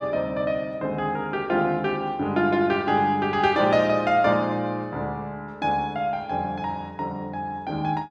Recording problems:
none

